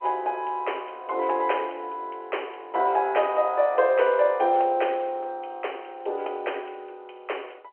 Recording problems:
phone line; 340 Hz to 3.2 kHz, G.711

